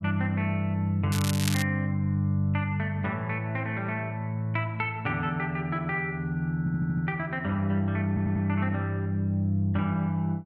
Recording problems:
crackling; at 1 s; loose cable, SNR 6 dB
stutter; at 6.5 s and at 8 s

